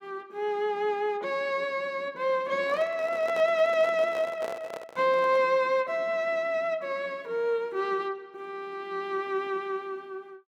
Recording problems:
handling noise; from 2.5 to 5.5 s; peak -5 dB vs average level

